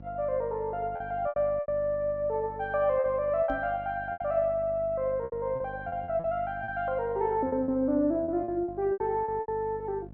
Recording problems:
treble cut off; nothing above 6.8 kHz
electrical hum; 50 Hz, harmonics up to 850 Hz, SNR 17 dB
packet loss; 10% of the sound replaced, filled with repeated pitch periods
knock on the microphone; at 3.5 s; peak -4 dB vs average level

